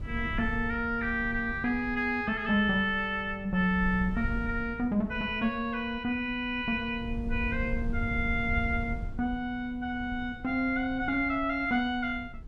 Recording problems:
wind noise; below 94 Hz, SNR 11 dB

